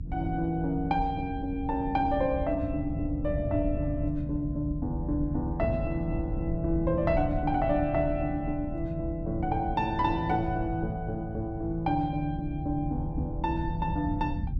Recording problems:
rumble; below 130 Hz, SNR 6 dB

